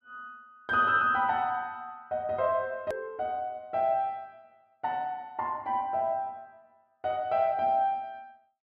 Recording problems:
hard cut with a click; at 3 s

